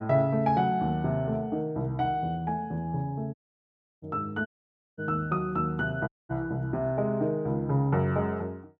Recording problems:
dropout; at 3.5 s for 0.5 s, at 4.5 s for 0.5 s and at 6 s

